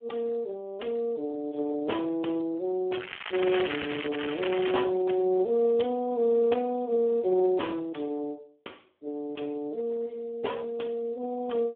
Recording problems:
phone line; 260 Hz to 3.3 kHz, Speex
crackle; from 3 to 5 s; loose cable, SNR 7 dB

